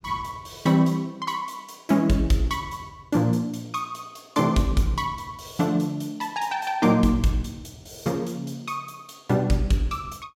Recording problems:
none

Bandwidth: 16.5 kHz